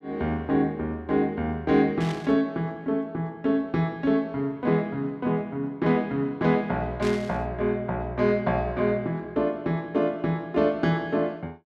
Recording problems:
burst of static; at 2 s and at 7 s; peak -7 dB vs average level

